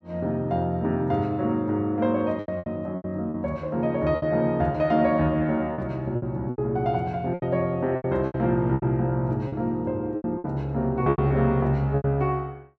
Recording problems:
packet loss; 10% of the sound replaced, filled with repeated pitch periods

